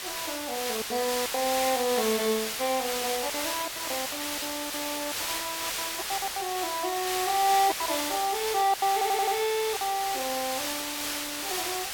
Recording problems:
background hiss; slope +1 dB per octave, SNR 1 dB
lost packets; 9% of the sound replaced, filled with silence
audio stuttering; at 9 s

